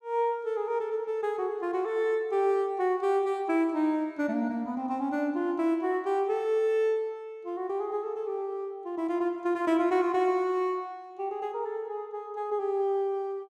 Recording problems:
none

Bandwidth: 15 kHz